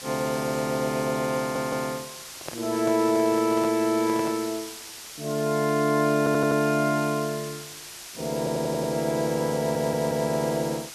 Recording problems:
hiss; slope +1 dB per octave, SNR 13 dB
audio stuttering; 4 times, first at 1.5 s
handling noise; from 2.5 to 4.5 s; peak -6 dB vs average level

